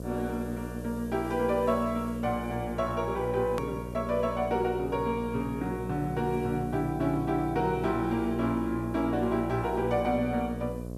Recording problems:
electrical hum; 60 Hz, harmonics up to 720 Hz, SNR 8 dB
hiss; SNR 27 dB
hard cut with a click; at 3.5 s

